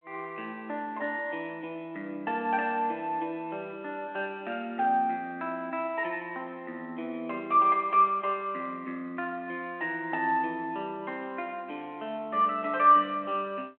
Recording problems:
phone line; 220 Hz to 3.3 kHz, G.726

